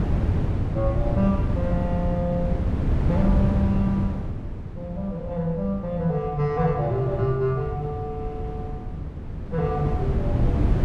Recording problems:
wind noise; below 180 Hz, SNR 1 dB

